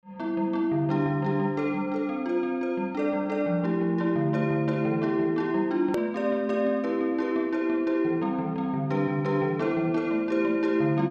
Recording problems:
click at an edit; at 6 s

